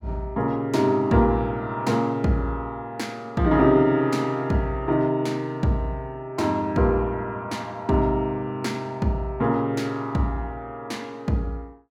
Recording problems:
none

